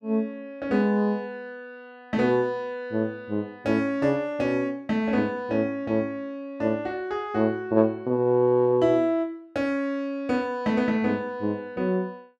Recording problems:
none

